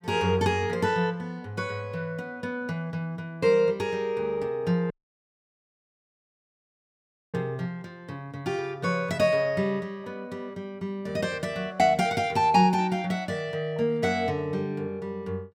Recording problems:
audio cutting out; at 5 s for 2.5 s

